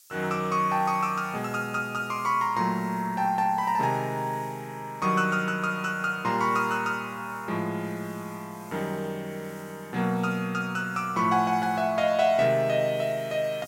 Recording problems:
background hiss; SNR 25 dB

